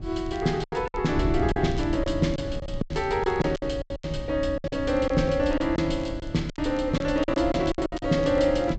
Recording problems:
treble missing; nothing above 8 kHz
wind noise; below 130 Hz, SNR 9 dB
crackling; vinyl, SNR 29 dB
packet loss; 13% of the sound replaced, filled with silence

